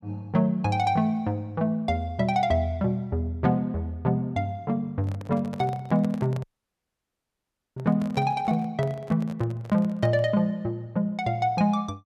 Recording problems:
microphone handling noise; from 5 to 10 s; peak -7 dB vs average level
dropout; at 6.5 s for 1.5 s

